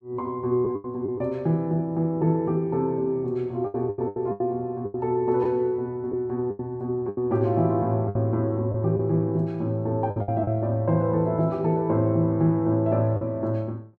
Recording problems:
lost packets; 7% of the sound replaced, filled with the last packet

